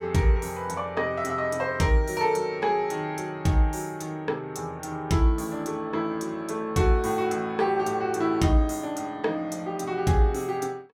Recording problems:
none

